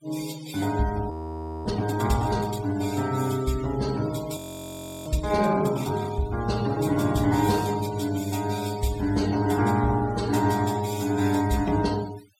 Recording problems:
noise reduction artefacts; signal-to-artefact ratio 16 dB
audio freezing; at 1 s for 0.5 s and at 4.5 s for 0.5 s

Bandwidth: 16.5 kHz